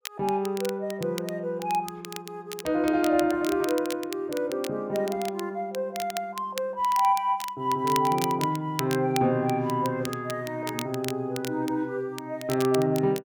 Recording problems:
crackling; vinyl, SNR 13 dB

